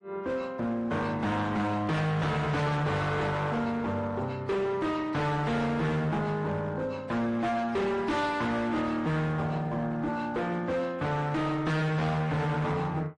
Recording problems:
lossy compression; MP3, then AAC, log-spectral distance 2 dB
distorted audio; hard clipping, uneven, signal-to-distortion ratio 7 dB

